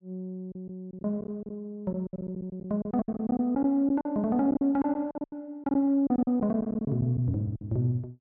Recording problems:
lost packets; 14% of the sound replaced, filled with silence

